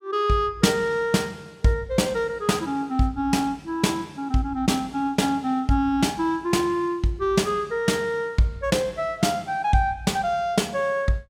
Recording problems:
none

